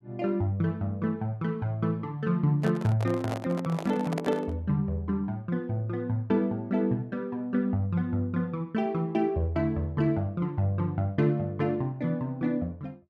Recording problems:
handling noise; from 2.5 to 4.5 s; peak -1 dB vs average level

